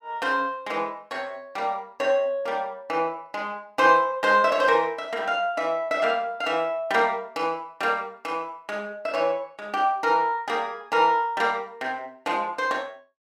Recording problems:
none

